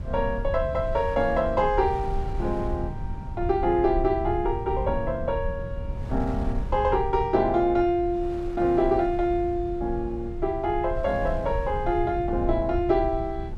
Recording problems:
rumble; below 88 Hz, SNR 9 dB
wind noise; below 730 Hz, SNR 21 dB

